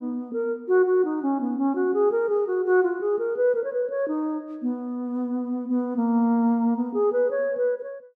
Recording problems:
none

